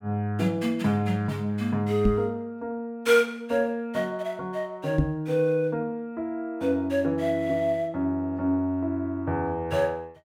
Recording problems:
microphone bump; at 2 s and at 5 s; peak +6 dB vs average level

